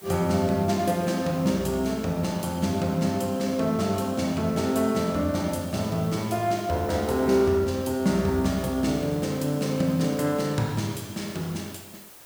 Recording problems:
hiss; slope -2 dB per octave, SNR 21 dB

